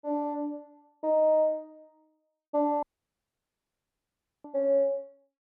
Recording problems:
audio cutting out; at 3 s for 1.5 s

